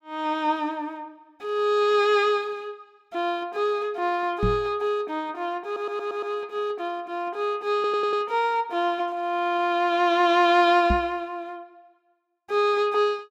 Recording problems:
microphone thump; at 4.5 s and at 11 s; peak +2 dB vs average level
audio stuttering; at 5.5 s and at 8 s

